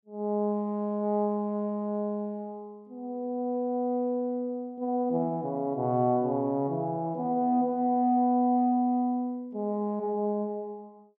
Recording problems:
none

